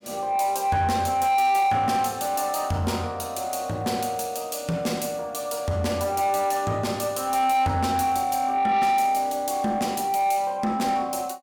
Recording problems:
distortion; soft clipping, signal-to-distortion ratio 11 dB

